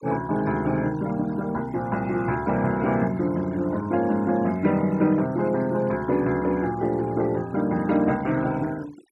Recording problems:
noise reduction artefacts; signal-to-artefact ratio 21 dB

